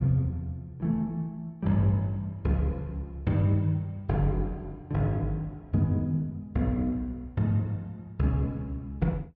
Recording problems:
none

